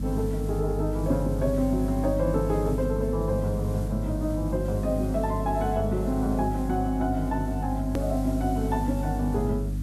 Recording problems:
hum; 50 Hz, harmonics up to 300 Hz, SNR 3 dB
hiss; slope -3 dB per octave, SNR 20 dB
click at an edit; at 8 s

